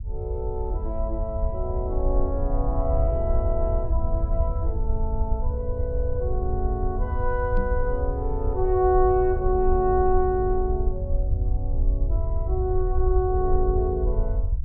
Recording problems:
rumble; below 68 Hz, SNR 1 dB
microphone bump; at 7.5 s; peak -2 dB vs average level

